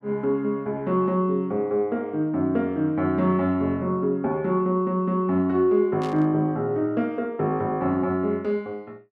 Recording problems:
burst of static; at 6 s; peak -12 dB vs average level

